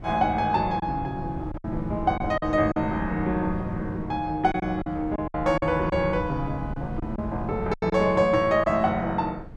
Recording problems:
wind on the microphone; below 180 Hz, SNR 12 dB
lost packets; 6% of the sound replaced, filled with silence

